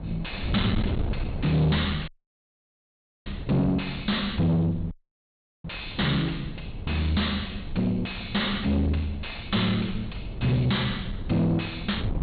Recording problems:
treble missing; nothing above 4.2 kHz
distorted audio; soft clipping, signal-to-distortion ratio 5 dB
wind on the microphone; below 190 Hz, SNR 9 dB
dropout; at 2 s for 1 s and at 5 s for 0.5 s

